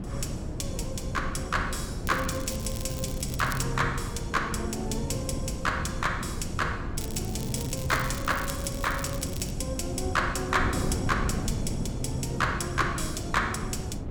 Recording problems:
hum; 60 Hz, harmonics up to 720 Hz, SNR 23 dB
wind noise; below 230 Hz, SNR 4 dB
crackle; from 2 to 3.5 s and from 7 to 9.5 s; loose cable, SNR 10 dB

